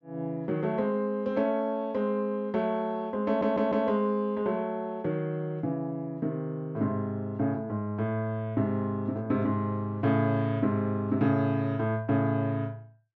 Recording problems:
treble cut off; nothing above 8 kHz
audio stuttering; at 3.5 s

